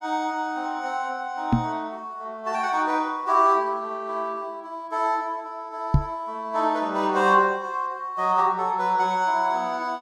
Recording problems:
microphone thump; at 1.5 s and at 6 s; peak +9 dB vs average level

